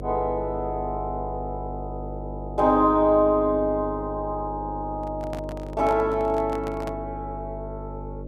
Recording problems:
hum; 50 Hz, harmonics up to 600 Hz, SNR 11 dB
handling noise; from 5 to 7 s; peak -7 dB vs average level

